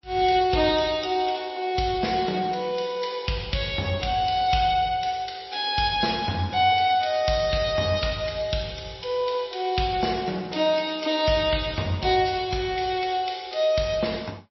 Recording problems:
lossy codec; MP3, then MP3, log-spectral distance 5 dB, nothing above 5.7 kHz

